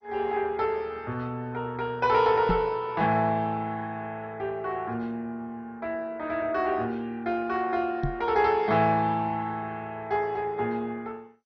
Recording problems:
lossy codec; MP2, log-spectral distance 2 dB, nothing above 5.2 kHz
knock on the microphone; at 2.5 s and at 8 s; peak +3 dB vs average level

